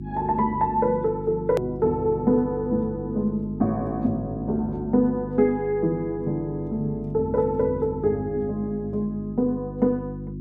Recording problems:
hum; 50 Hz, harmonics up to 350 Hz, SNR 10 dB
hard cut with a click; at 1.5 s

